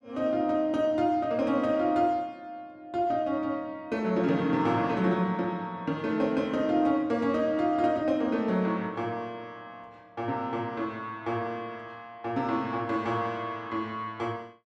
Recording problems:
none

